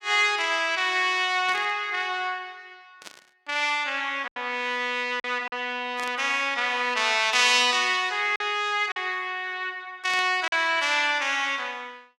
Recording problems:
packet loss; 2% of the sound replaced, filled with silence
static burst; 4 times, first at 1.5 s; peak -9 dB vs average level

